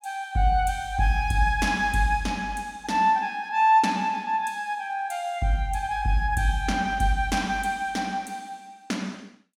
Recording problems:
none

